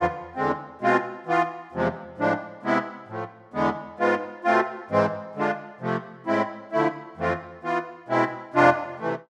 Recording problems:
none

